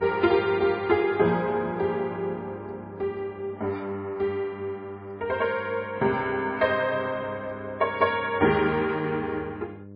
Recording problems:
lossy codec; MP3, log-spectral distance 2 dB, nothing above 4 kHz
electrical hum; 50 Hz, harmonics up to 700 Hz, SNR 18 dB

